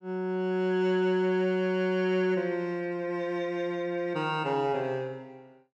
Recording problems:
none

